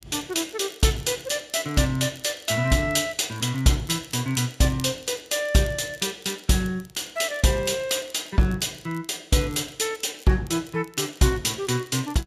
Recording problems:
crackling; vinyl, SNR 24 dB

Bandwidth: 14.5 kHz